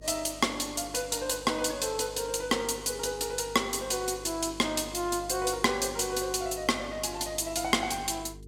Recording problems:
electrical hum; 50 Hz, harmonics up to 450 Hz, SNR 19 dB

